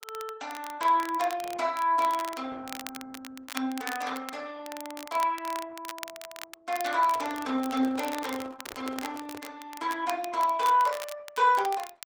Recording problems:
codec artefacts; Opus, log-spectral distance 3 dB, nothing above 19.5 kHz
crackle; vinyl, SNR 14 dB
handling noise; from 7 to 9.5 s; peak -12 dB vs average level

